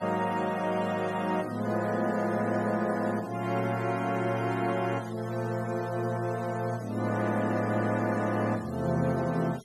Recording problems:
noise reduction artefacts; signal-to-artefact ratio 19 dB

